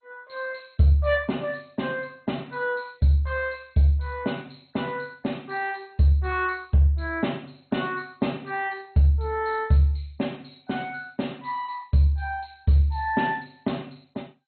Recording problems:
codec artefacts; MP2, log-spectral distance 6 dB, nothing above 4.2 kHz

